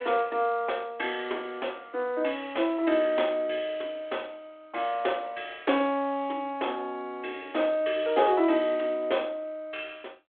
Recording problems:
telephone audio; 260 Hz to 3.5 kHz, G.726

